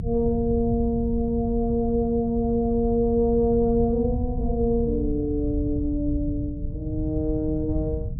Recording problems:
rumble; below 110 Hz, SNR 7 dB

